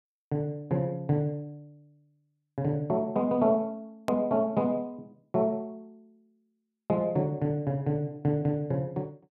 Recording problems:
hard cut with a click; at 4 s

